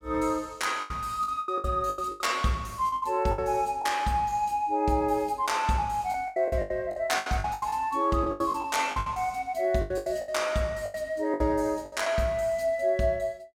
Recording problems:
packet loss; 13% of the sound replaced, filled with the last packet

